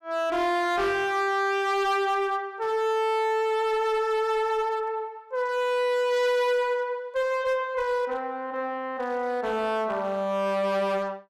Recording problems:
distortion; hard clipping, signal-to-distortion ratio 8 dB

